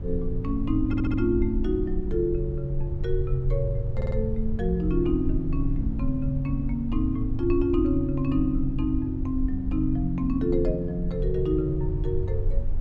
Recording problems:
low-frequency rumble; below 60 Hz, SNR 5 dB
audio stuttering; at 1 s and at 4 s

